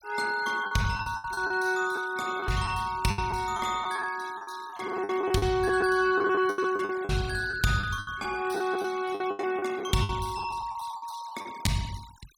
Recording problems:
noise reduction artefacts; signal-to-artefact ratio 19 dB
packet loss; 14% of the sound replaced, filled with the last packet

